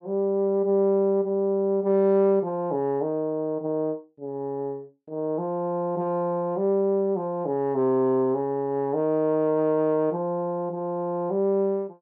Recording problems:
none

